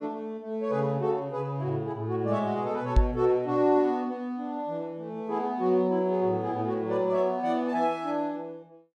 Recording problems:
microphone thump; at 3 s; peak +9 dB vs average level

